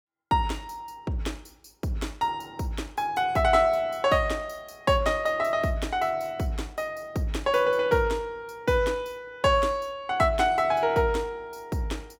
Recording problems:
none

